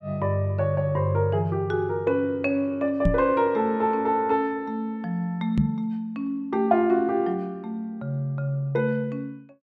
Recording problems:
microphone bump; at 3 s and at 5.5 s; peak +6 dB vs average level

